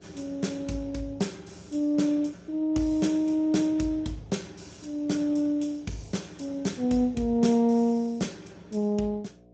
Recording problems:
codec artefacts; MP2, then Speex, log-spectral distance 4 dB, nothing above 7.6 kHz
electrical hum; 60 Hz, harmonics up to 720 Hz, SNR 28 dB

